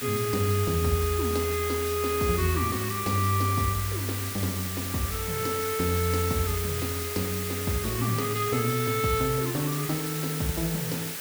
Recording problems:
hiss; SNR 5 dB

